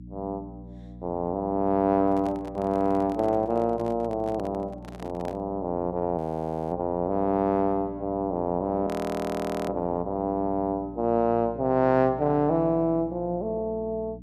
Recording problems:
hum; 60 Hz, harmonics up to 300 Hz, SNR 17 dB
microphone handling noise; from 2 to 5.5 s; peak -11 dB vs average level
frozen audio; at 6 s for 0.5 s and at 9 s for 1 s

